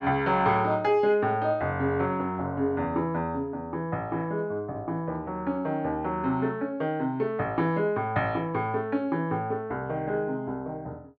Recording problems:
none

